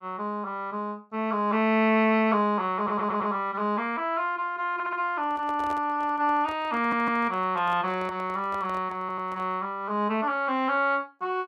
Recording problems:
audio stuttering; 4 times, first at 3 s
handling noise; from 5 to 9.5 s; peak -9 dB vs average level

